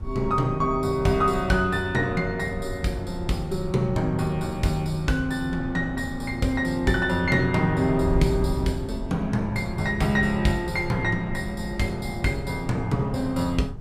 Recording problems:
wind noise; below 120 Hz, SNR 11 dB

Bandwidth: 14.5 kHz